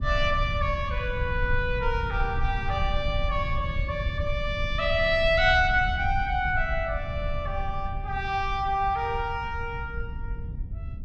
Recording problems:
low-frequency rumble; below 86 Hz, SNR 6 dB

